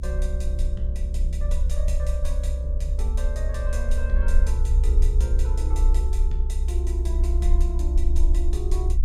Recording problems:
hum; 50 Hz, harmonics up to 450 Hz, SNR 8 dB
rumble; below 64 Hz, strongest tone 32 Hz, SNR -11 dB

